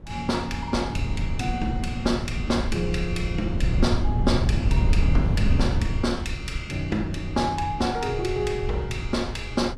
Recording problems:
wind on the microphone; below 110 Hz, SNR 0 dB

